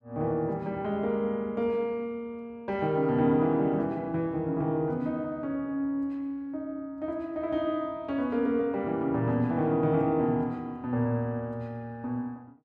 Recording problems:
none

